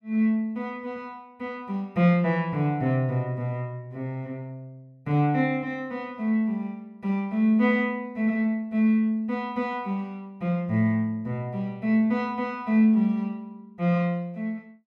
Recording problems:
none

